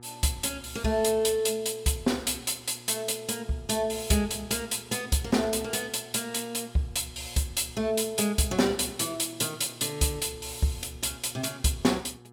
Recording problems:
hum; 60 Hz, harmonics up to 1.7 kHz, SNR 23 dB

